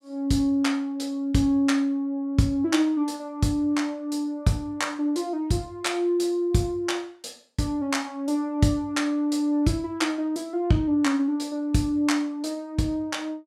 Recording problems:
none

